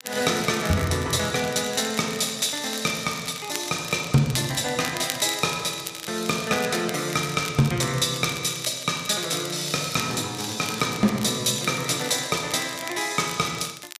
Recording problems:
crackle; vinyl, SNR 13 dB

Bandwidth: 14.5 kHz